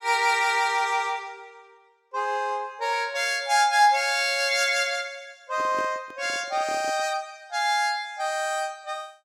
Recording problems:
handling noise; from 5.5 to 7 s; peak -10 dB vs average level

